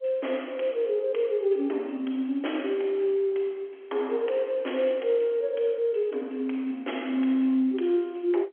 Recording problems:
phone line; 240 Hz to 3.3 kHz, G.711

